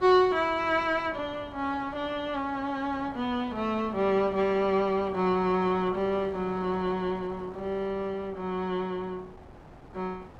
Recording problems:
wind on the microphone; below 870 Hz, SNR 19 dB

